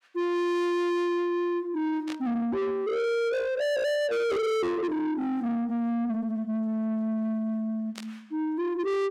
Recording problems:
distorted audio; soft clipping, signal-to-distortion ratio 6 dB
static burst; at 2 s and at 8 s; peak -7 dB vs average level

